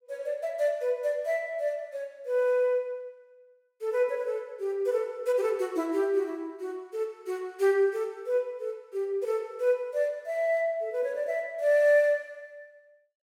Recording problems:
none

